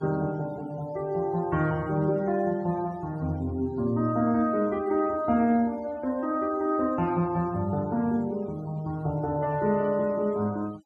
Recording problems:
denoising artefacts; signal-to-artefact ratio 25 dB

